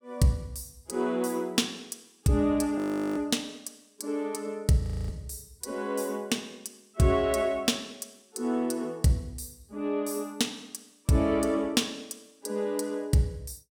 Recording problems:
audio freezing; at 3 s and at 5 s

